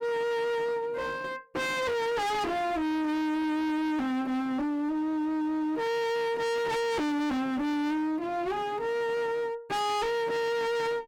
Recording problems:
distortion; hard clipping, uneven, signal-to-distortion ratio 5 dB

